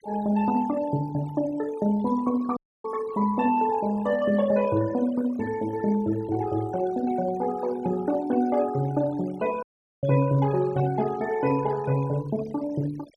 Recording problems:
denoising artefacts; signal-to-artefact ratio 18 dB
audio cutting out; at 2.5 s and at 9.5 s

